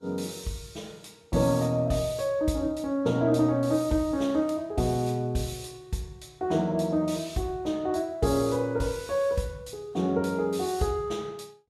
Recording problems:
lossy codec; Vorbis, log-spectral distance 3 dB, nothing above 12.7 kHz

